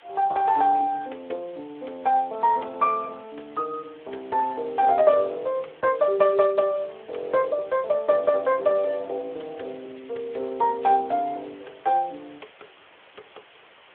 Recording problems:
telephone audio; 340 Hz to 3.6 kHz, Speex
background hiss; SNR 27 dB

